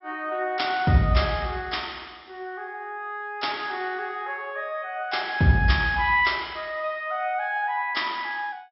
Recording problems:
treble missing; nothing above 5.6 kHz

